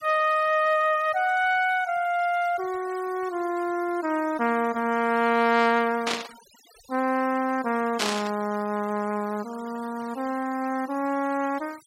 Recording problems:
denoising artefacts; signal-to-artefact ratio 21 dB
burst of static; at 6 s and at 8 s; peak +3 dB vs average level

